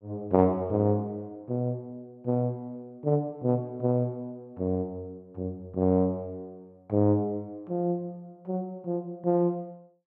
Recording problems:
none

